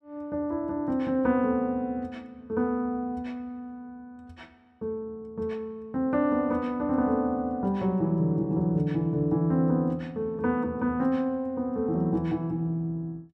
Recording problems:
none

